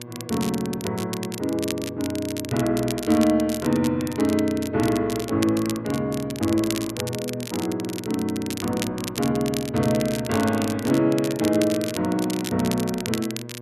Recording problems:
hum; 60 Hz, harmonics up to 1.2 kHz, SNR 15 dB
crackling; vinyl, SNR 11 dB

